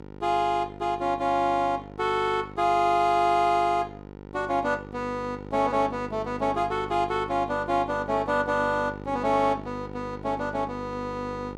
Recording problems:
hum; 50 Hz, harmonics up to 1.9 kHz, SNR 14 dB

